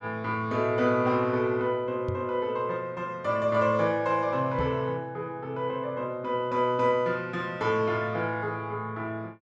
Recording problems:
knock on the microphone; at 2 s and at 4.5 s; peak -2 dB vs average level

